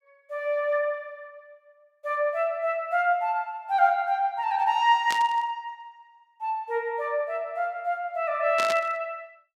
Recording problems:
burst of static; at 5 s and at 8.5 s; peak -1 dB vs average level

